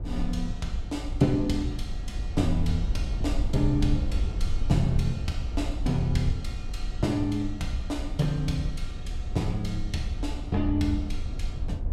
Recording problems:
low-frequency rumble; below 68 Hz, SNR 5 dB

